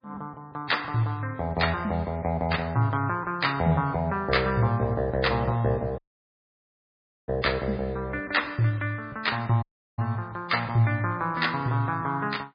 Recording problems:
lossy compression; MP3, log-spectral distance 3 dB, nothing above 4.5 kHz
audio cutting out; at 6 s for 1.5 s and at 9.5 s

